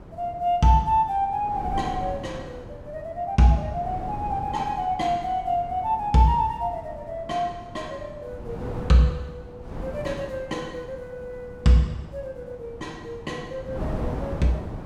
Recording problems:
wind on the microphone; below 410 Hz, SNR 13 dB

